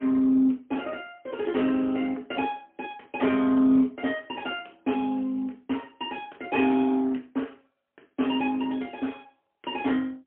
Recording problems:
telephone audio; 220 Hz to 3.4 kHz, AMR-NB, then MP3

